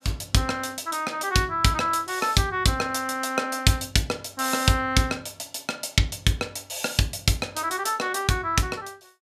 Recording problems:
none

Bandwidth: 14.5 kHz